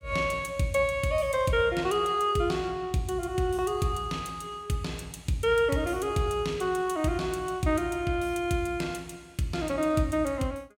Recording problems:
none

